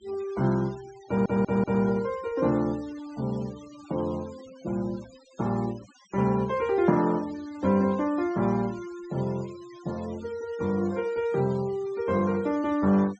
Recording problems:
low-pass filter; nothing above 8 kHz
noise reduction artefacts; signal-to-artefact ratio 22 dB
stutter; at 1 s

